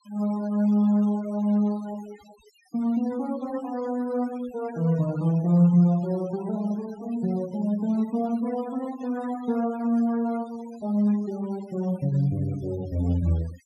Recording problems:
denoising artefacts; signal-to-artefact ratio 23 dB

